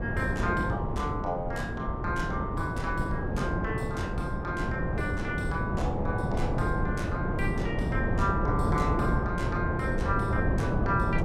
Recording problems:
wind noise; below 360 Hz, SNR -3 dB

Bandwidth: 16 kHz